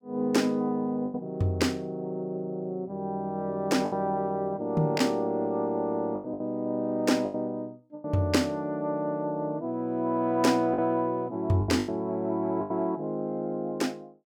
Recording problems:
lost packets; 5% of the sound replaced, filled with the last packet

